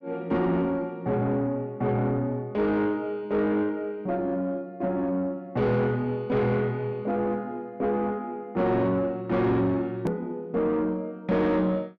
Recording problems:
distorted audio; soft clipping, signal-to-distortion ratio 10 dB
click at an edit; at 10 s

